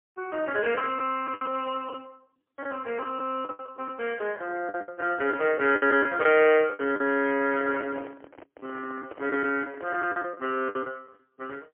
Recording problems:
telephone audio; 220 Hz to 2.9 kHz, AMR-NB, then MP3
lost packets; 11% of the sound replaced, filled with the last packet
microphone handling noise; from 7.5 to 10 s; peak -7 dB vs average level

